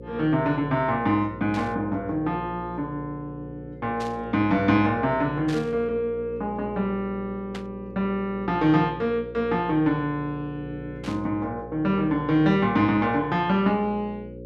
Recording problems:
electrical hum; 60 Hz, harmonics up to 540 Hz, SNR 14 dB
static burst; 5 times, first at 1.5 s; peak -9 dB vs average level

